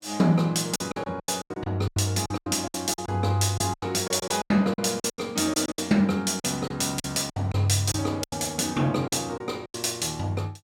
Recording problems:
lost packets; 15% of the sound replaced, filled with silence

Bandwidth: 16 kHz